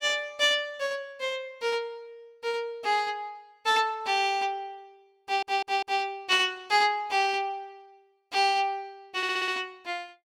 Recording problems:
audio stuttering; at 5 s and at 9 s

